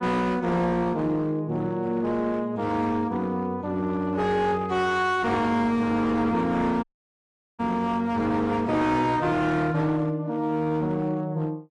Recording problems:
lossy codec; AAC, then AAC, log-spectral distance 2 dB
distortion; hard clipping, uneven, signal-to-distortion ratio 11 dB
dropout; at 7 s for 1 s

